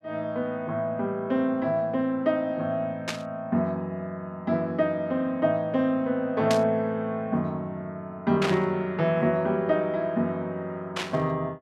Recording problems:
burst of static; 4 times, first at 3 s; peak +2 dB vs average level

